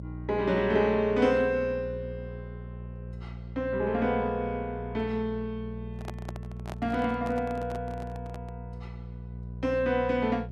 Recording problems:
electrical hum; 60 Hz, harmonics up to 420 Hz, SNR 11 dB
handling noise; from 6 to 8.5 s; peak -6 dB vs average level

